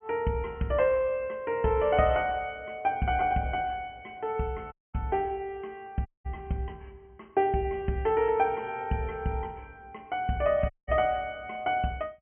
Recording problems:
low-pass filter; nothing above 3.1 kHz
dropout; at 4.5 s, at 6 s and at 11 s

